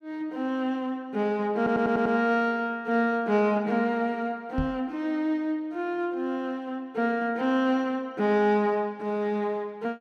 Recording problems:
stutter; at 1.5 s
knock on the microphone; at 4.5 s; peak -1 dB vs average level

